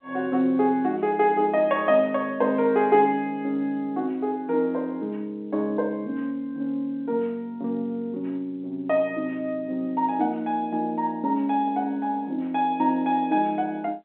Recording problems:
phone line; 220 Hz to 3.8 kHz, G.711

